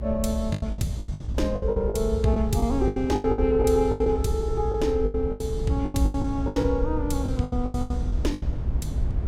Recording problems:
rumble; below 92 Hz, SNR 4 dB
lost packets; 19% of the sound replaced, filled with the last packet

